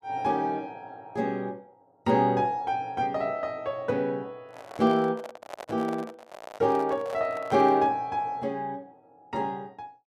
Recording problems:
microphone handling noise; from 4.5 to 8 s; peak -7 dB vs average level

